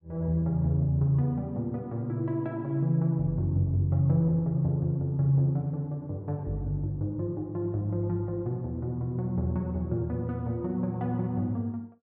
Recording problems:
none

